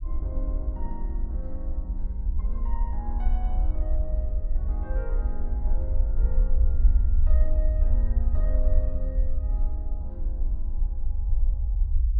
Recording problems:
rumble; below 56 Hz, SNR -14 dB

